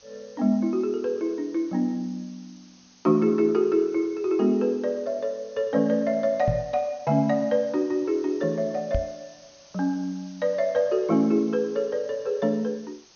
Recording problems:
treble cut off; nothing above 6.5 kHz
hiss; SNR 27 dB
microphone thump; at 6.5 s and at 9 s; peak +3 dB vs average level

